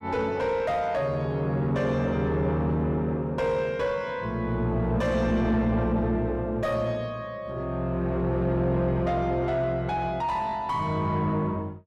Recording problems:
distorted audio; soft clipping, signal-to-distortion ratio 10 dB

